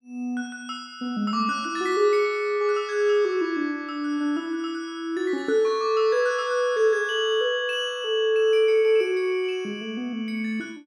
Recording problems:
none

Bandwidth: 16 kHz